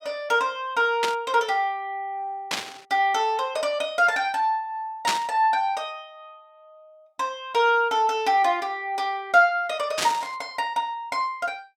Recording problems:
burst of static; 4 times, first at 1 s; peak +3 dB vs average level

